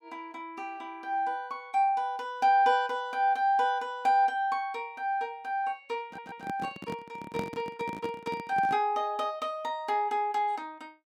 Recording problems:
audio stuttering; at 6 s
microphone handling noise; from 6 to 9 s; peak -1 dB vs average level

